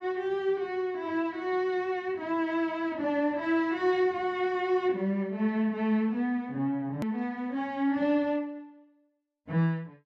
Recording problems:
edit click; at 7 s

